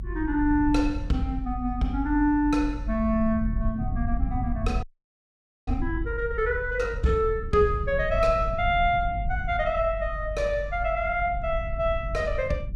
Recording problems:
low-frequency rumble; below 76 Hz, SNR 7 dB
audio freezing; at 5 s for 1 s

